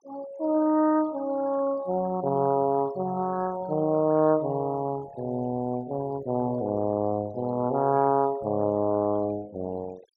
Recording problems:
noise reduction artefacts; signal-to-artefact ratio 21 dB

